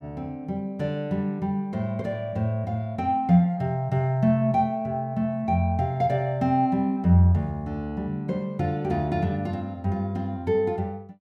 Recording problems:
none

